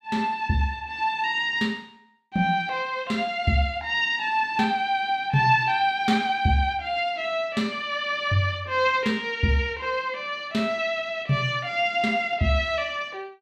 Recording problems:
none

